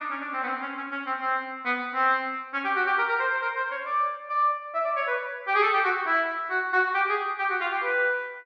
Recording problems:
none

